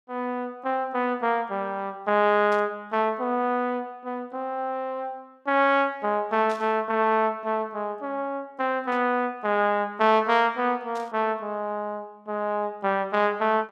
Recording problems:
static burst; 4 times, first at 2.5 s; peak -13 dB vs average level

